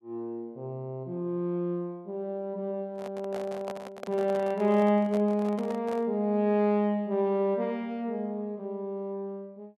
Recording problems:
microphone handling noise; from 3 to 6 s; peak -6 dB vs average level

